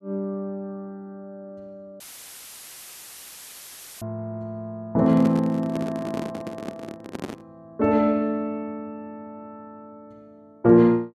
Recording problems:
dropout; at 2 s for 2 s; filled with static
handling noise; from 5 to 7.5 s; peak -4 dB vs average level

